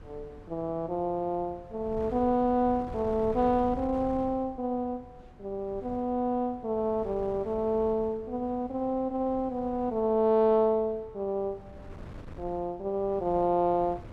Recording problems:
wind on the microphone; below 300 Hz, SNR 18 dB

